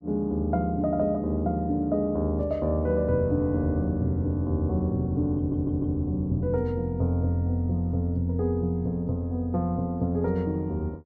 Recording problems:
stutter; at 5.5 s

